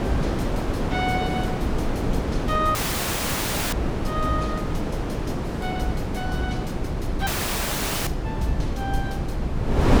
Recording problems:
rumble; below 110 Hz, SNR 5 dB
wind noise; below 500 Hz, SNR -2 dB
dropout; at 3 s for 1 s and at 7.5 s for 1 s

